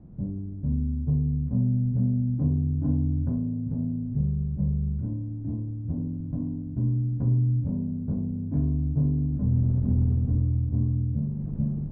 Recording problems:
wind on the microphone; below 210 Hz, SNR 18 dB

